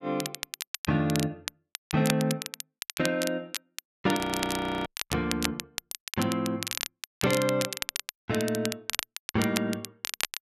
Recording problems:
crackling; vinyl, SNR 6 dB
frozen audio; at 4 s for 0.5 s

